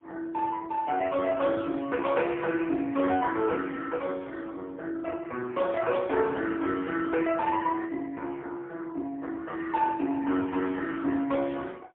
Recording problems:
phone line; 300 Hz to 3.4 kHz, AMR-NB, then MP3

